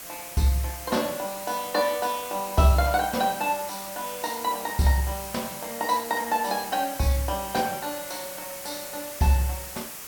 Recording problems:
background hiss; slope -1 dB per octave, SNR 9 dB

